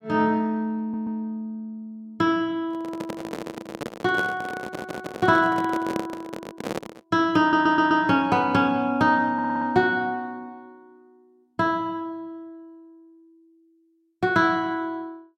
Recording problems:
stutter; 4 times, first at 1 s
handling noise; from 2.5 to 7 s; peak -2 dB vs average level

